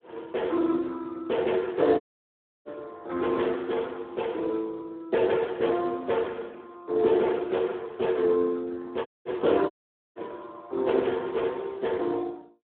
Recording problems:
phone line; 280 Hz to 3.4 kHz, Speex
audio cutting out; at 2 s for 0.5 s, at 9 s and at 9.5 s

